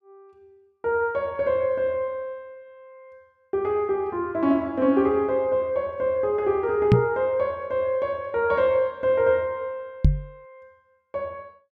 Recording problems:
knock on the microphone; at 7 s and at 10 s; peak +10 dB vs average level

